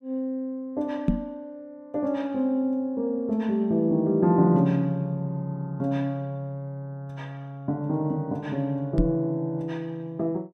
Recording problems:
microphone bump; at 1 s and at 9 s; peak +8 dB vs average level

